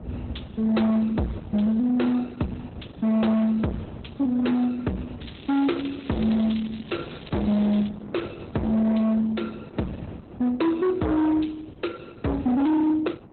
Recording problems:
lossy codec; Opus, log-spectral distance 5 dB, nothing above 4 kHz
distortion; hard clipping, signal-to-distortion ratio 6 dB
wind on the microphone; below 430 Hz, SNR 19 dB
crackling; from 5 to 8 s; loose cable, SNR 20 dB

